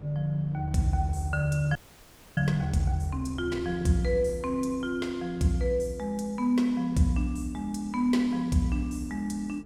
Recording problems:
hum; 50 Hz, harmonics up to 450 Hz, SNR 27 dB
wind noise; below 300 Hz, SNR 21 dB
audio freezing; at 2 s for 0.5 s

